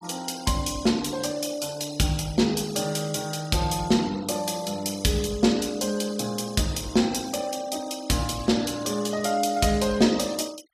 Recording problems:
denoising artefacts; signal-to-artefact ratio 20 dB

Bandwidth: 14.5 kHz